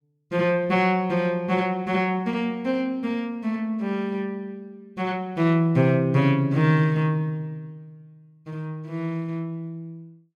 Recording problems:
none

